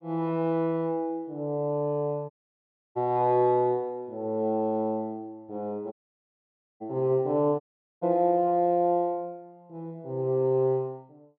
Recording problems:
audio cutting out; at 2.5 s for 0.5 s, at 6 s for 1 s and at 7.5 s

